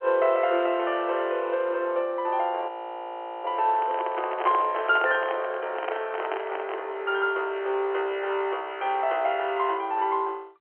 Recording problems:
telephone audio; 300 Hz to 3.2 kHz, G.711
audio freezing; at 2.5 s for 1 s
handling noise; from 3.5 to 7 s; peak -1 dB vs average level

